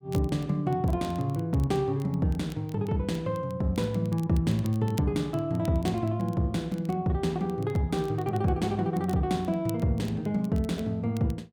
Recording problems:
crackling; vinyl, SNR 24 dB

